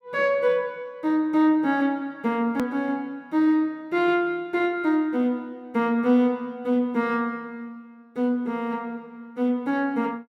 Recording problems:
hard cut with a click; at 2.5 s

